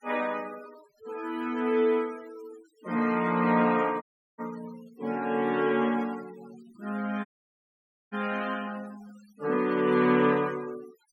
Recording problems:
noise reduction artefacts; signal-to-artefact ratio 21 dB
dropout; at 4 s and at 7.5 s for 1 s

